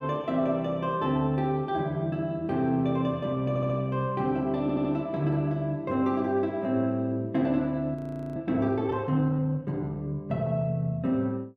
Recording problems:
audio stuttering; at 3.5 s and at 4.5 s
frozen audio; at 8 s

